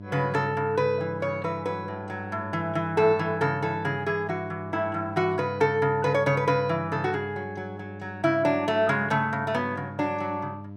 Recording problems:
electrical hum; 50 Hz, harmonics up to 700 Hz, SNR 13 dB

